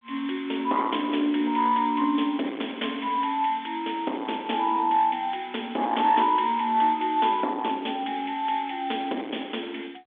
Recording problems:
telephone audio; 240 Hz to 3.6 kHz, G.726
distortion; soft clipping, signal-to-distortion ratio 10 dB

